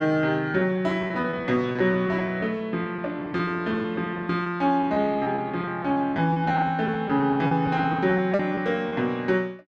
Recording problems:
lost packets; 14% of the sound replaced, filled with repeated pitch periods

